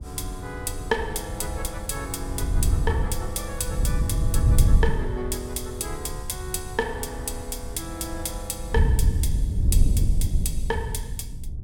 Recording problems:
wind on the microphone; below 90 Hz, SNR -4 dB

